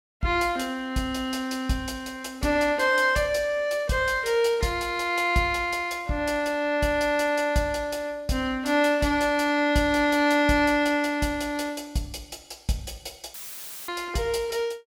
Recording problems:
dropout; at 13 s for 0.5 s; filled with static

